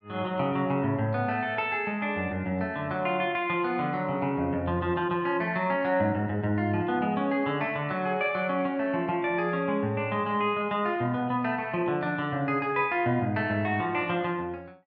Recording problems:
none

